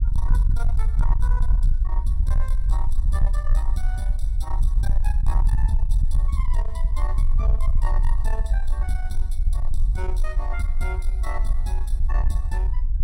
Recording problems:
distortion; soft clipping, signal-to-distortion ratio 10 dB
low-frequency rumble; below 48 Hz, SNR -9 dB

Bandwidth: 16.5 kHz